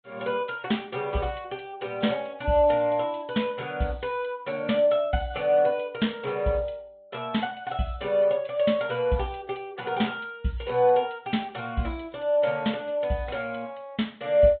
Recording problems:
treble missing; nothing above 3.7 kHz
lossy codec; MP3, log-spectral distance 3 dB

